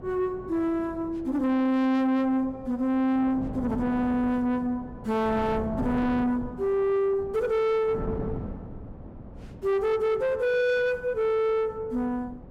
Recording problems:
distorted audio; soft clipping, signal-to-distortion ratio 10 dB
wind noise; below 360 Hz, SNR 13 dB

